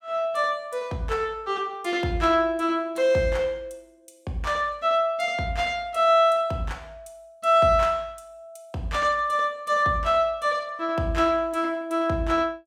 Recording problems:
none

